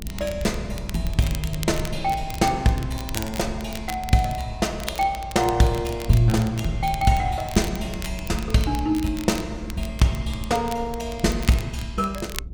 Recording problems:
rumble; below 100 Hz, SNR 12 dB
crackling; vinyl, SNR 15 dB

